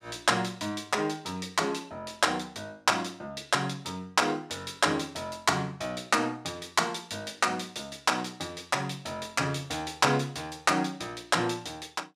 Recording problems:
none

